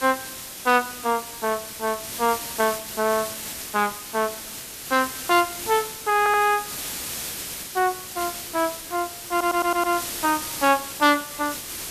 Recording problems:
background hiss; slope 0 dB per octave, SNR 8 dB
audio stuttering; at 6 s and at 9.5 s

